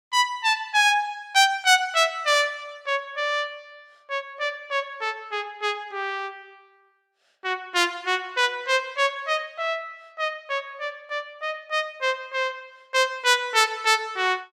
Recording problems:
none

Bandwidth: 16.5 kHz